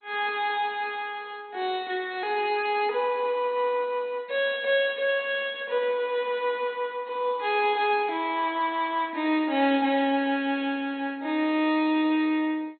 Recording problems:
codec artefacts; MP2, log-spectral distance 3 dB, nothing above 3.5 kHz

